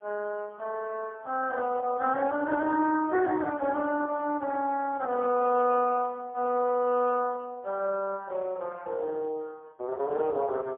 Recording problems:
telephone audio; 320 Hz to 2.7 kHz, AMR-NB, then MP3

